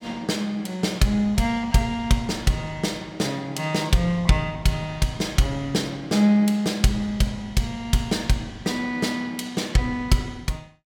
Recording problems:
none

